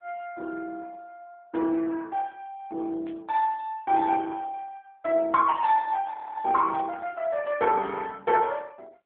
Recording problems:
phone line; 260 Hz to 2.2 kHz, AMR-NB
burst of static; at 1.5 s, at 3 s and at 6.5 s; peak -17 dB vs average level
frozen audio; at 6 s

